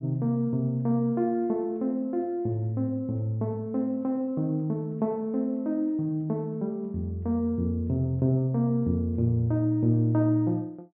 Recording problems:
treble missing; nothing above 4 kHz

